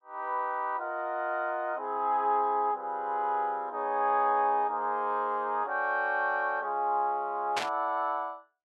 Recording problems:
static burst; at 7.5 s; peak +2 dB vs average level

